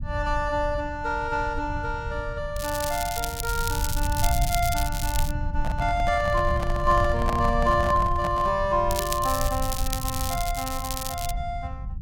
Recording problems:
low-frequency rumble; below 90 Hz, SNR 5 dB
crackling; from 2.5 to 5.5 s and from 9 to 11 s; loose cable, SNR 6 dB
microphone handling noise; from 5.5 to 8.5 s; peak +1 dB vs average level

